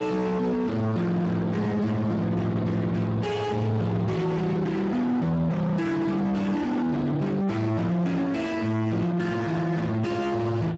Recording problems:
lossy compression; Speex, log-spectral distance 4 dB, nothing above 7.6 kHz
distortion; soft clipping, signal-to-distortion ratio 5 dB

